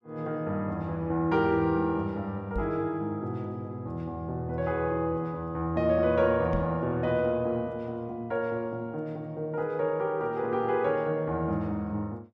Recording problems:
microphone thump; at 2.5 s and at 6.5 s; peak -1 dB vs average level

